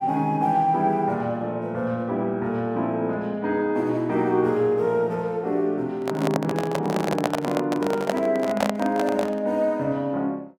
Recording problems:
handling noise; from 6 to 9.5 s; peak +5 dB vs average level

